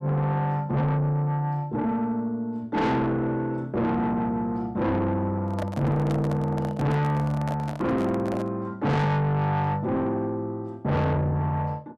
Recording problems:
distorted audio; soft clipping, signal-to-distortion ratio 6 dB
handling noise; from 5.5 to 8.5 s; peak -2 dB vs average level

